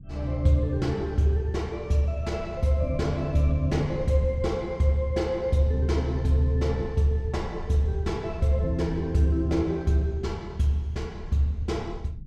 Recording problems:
rumble; below 110 Hz, SNR 15 dB

